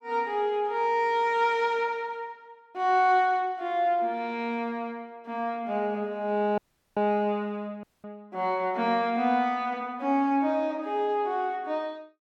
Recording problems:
audio cutting out; at 6.5 s and at 8 s

